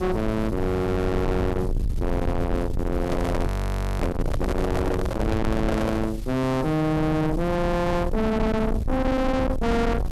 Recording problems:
distorted audio; soft clipping, signal-to-distortion ratio 6 dB
background hiss; SNR 24 dB
low-frequency rumble; below 280 Hz, SNR 4 dB
handling noise; from 3 to 6 s; peak +3 dB vs average level
audio freezing; at 3.5 s for 0.5 s

